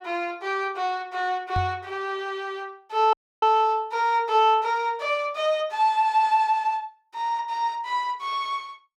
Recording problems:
knock on the microphone; at 1.5 s; peak -1 dB vs average level
audio cutting out; at 3 s

